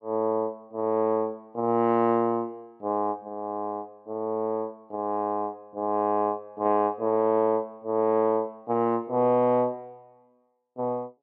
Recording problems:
none

